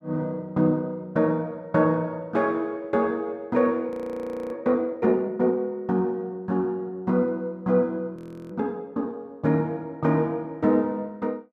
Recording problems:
audio freezing; at 4 s for 0.5 s and at 8 s

